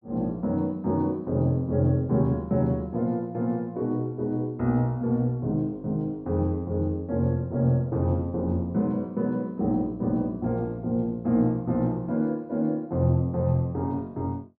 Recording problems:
none

